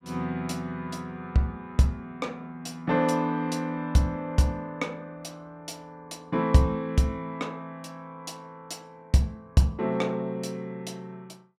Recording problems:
none

